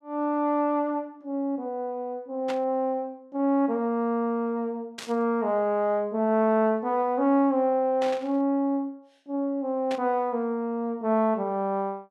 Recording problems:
static burst; 4 times, first at 2.5 s; peak -6 dB vs average level

